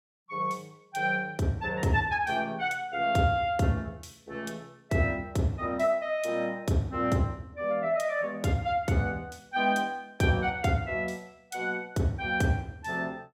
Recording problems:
none

